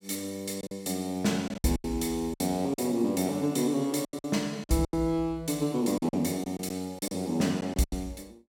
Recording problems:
lost packets; 11% of the sound replaced, filled with silence

